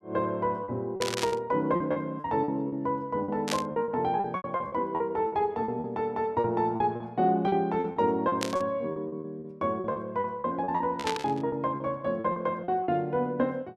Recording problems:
lost packets; 13% of the sound replaced, filled with repeated pitch periods
burst of static; 4 times, first at 1 s; peak +3 dB vs average level

